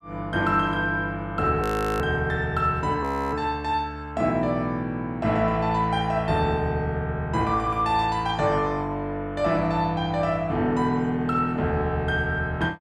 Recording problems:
frozen audio; at 1.5 s and at 3 s

